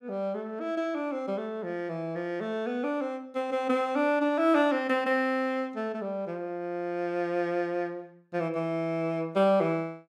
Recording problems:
none

